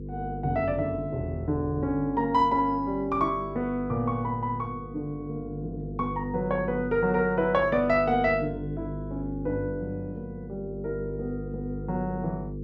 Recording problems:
hum; 50 Hz, harmonics up to 500 Hz, SNR 9 dB

